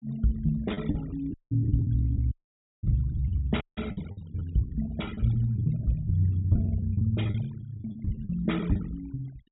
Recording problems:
treble missing; nothing above 4 kHz
noise reduction artefacts; signal-to-artefact ratio 22 dB
packet loss; 12% of the sound replaced, filled with the last packet
audio cutting out; at 1.5 s, at 2.5 s for 0.5 s and at 3.5 s

